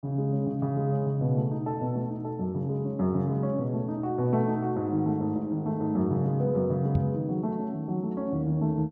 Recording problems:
microphone bump; at 7 s; peak +3 dB vs average level

